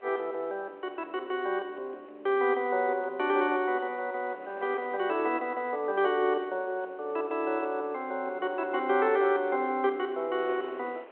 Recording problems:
phone line; 300 Hz to 3.5 kHz, G.726
wind on the microphone; below 1.2 kHz, SNR 24 dB

